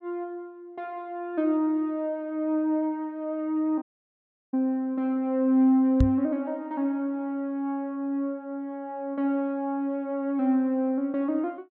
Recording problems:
dropout; at 4 s for 0.5 s
microphone bump; at 6 s; peak +8 dB vs average level

